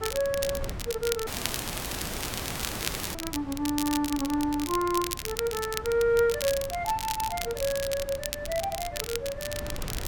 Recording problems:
wind on the microphone; below 320 Hz, SNR 13 dB
crackling; vinyl, SNR 6 dB
dropout; at 1.5 s for 2 s

